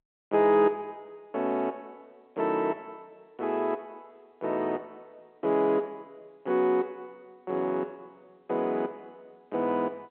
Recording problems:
telephone audio; 260 Hz to 3.3 kHz, G.711

